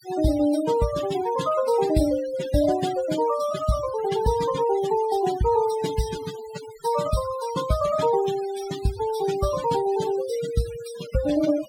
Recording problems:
noise reduction artefacts; signal-to-artefact ratio 15 dB

